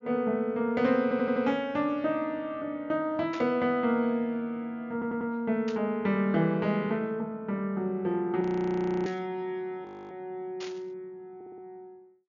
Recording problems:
low-pass filter; nothing above 7 kHz
audio stuttering; at 1 s, at 5 s and at 11 s
burst of static; 4 times, first at 3.5 s; peak -8 dB vs average level
audio freezing; at 8.5 s for 0.5 s and at 10 s

